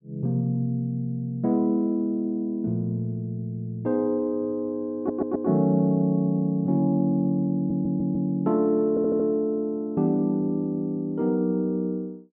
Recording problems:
audio stuttering; at 5 s, at 7.5 s and at 9 s

